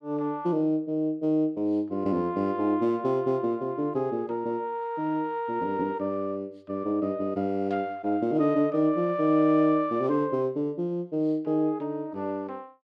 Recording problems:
none

